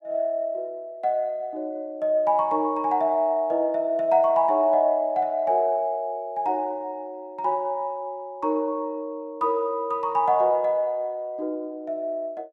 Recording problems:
none

